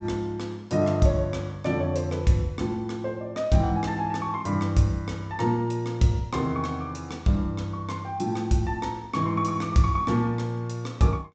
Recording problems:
treble missing; nothing above 8 kHz

